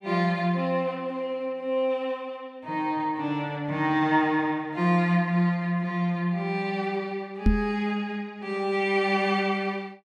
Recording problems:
knock on the microphone; at 7.5 s; peak +9 dB vs average level

